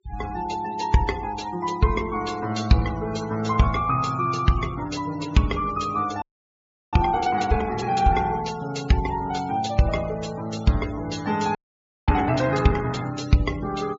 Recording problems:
treble missing; nothing above 7.3 kHz
denoising artefacts; signal-to-artefact ratio 17 dB
audio freezing; at 6 s for 0.5 s and at 12 s for 0.5 s

